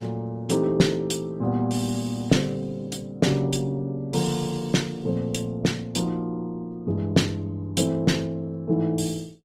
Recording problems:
lossy compression; Opus, log-spectral distance 3 dB, nothing above 18.9 kHz

